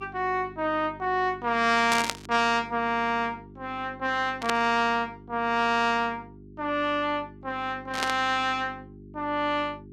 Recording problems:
hum; 50 Hz, harmonics up to 400 Hz, SNR 20 dB
static burst; at 2 s, at 4.5 s and at 8 s; peak +3 dB vs average level

